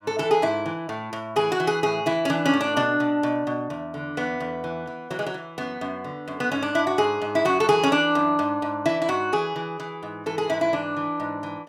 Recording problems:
none

